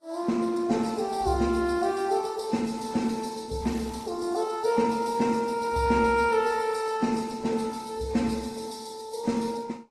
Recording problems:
codec artefacts; Opus, then Vorbis, log-spectral distance 5 dB, nothing above 12.3 kHz
crackling; at 3.5 s; loose cable, SNR 26 dB

